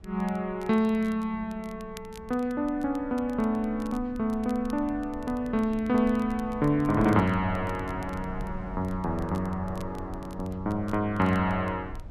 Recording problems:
rumble; below 110 Hz, SNR 16 dB
crackle; vinyl, SNR 27 dB

